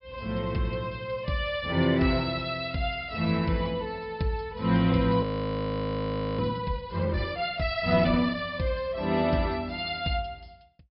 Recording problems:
low-pass filter; nothing above 5.5 kHz
frozen audio; at 5 s for 1 s

